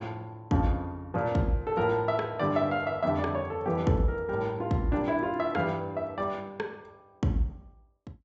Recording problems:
low-pass filter; nothing above 7.8 kHz

